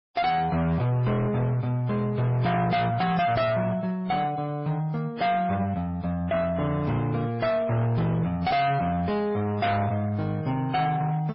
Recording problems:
lossy compression; MP3, then AAC, log-spectral distance 2 dB, nothing above 4.9 kHz
distorted audio; hard clipping, signal-to-distortion ratio 8 dB

